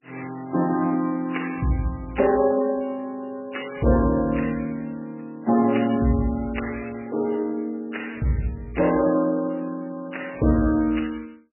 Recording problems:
lossy codec; MP3, log-spectral distance 5 dB, nothing above 2.9 kHz

